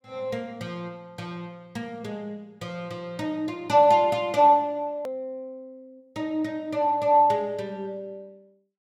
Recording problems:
edit click; at 5 s

